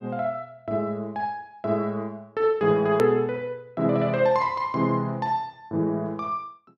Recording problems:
edit click; at 3 s

